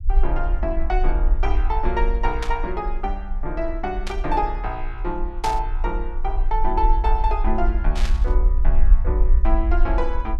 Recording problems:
low-frequency rumble; below 44 Hz, SNR -2 dB
burst of static; 4 times, first at 2.5 s; peak 0 dB vs average level

